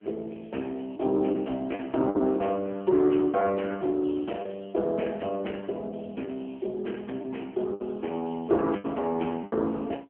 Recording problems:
telephone audio; 220 Hz to 3.2 kHz, AMR-NB
lost packets; 5% of the sound replaced, filled with the last packet

